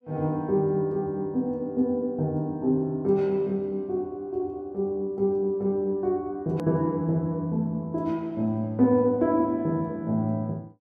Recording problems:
edit click; at 6.5 s

